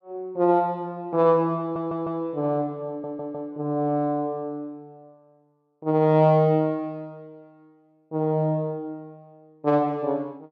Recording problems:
stutter; at 1.5 s and at 3 s

